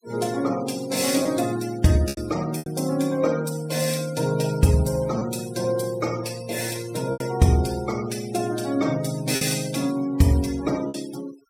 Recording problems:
denoising artefacts; signal-to-artefact ratio 18 dB
lost packets; 3% of the sound replaced, filled with repeated pitch periods

